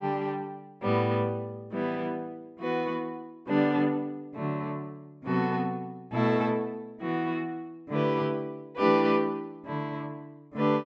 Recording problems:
low-pass filter; nothing above 8 kHz

